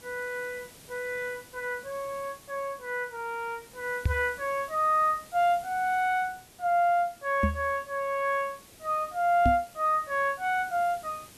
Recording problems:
background hiss; SNR 22 dB
knock on the microphone; at 4 s, at 7.5 s and at 9.5 s; peak +6 dB vs average level

